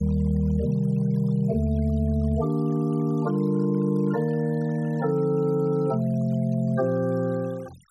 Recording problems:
noise reduction artefacts; signal-to-artefact ratio 27 dB

